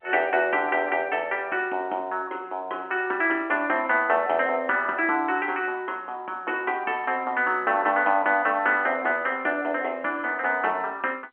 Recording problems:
telephone audio; 260 Hz to 3.2 kHz, G.711

